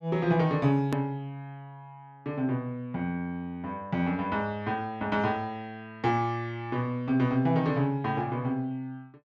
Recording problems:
hard cut with a click; at 1 s

